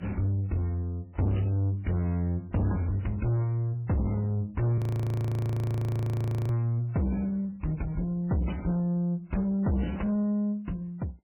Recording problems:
lossy codec; MP3, then AAC, log-spectral distance 2 dB, nothing above 19.5 kHz
distortion; soft clipping, signal-to-distortion ratio 7 dB
frozen audio; at 5 s for 1.5 s

